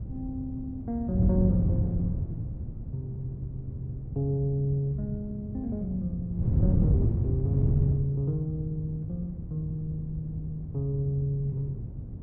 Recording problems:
wind on the microphone; below 150 Hz, SNR 1 dB

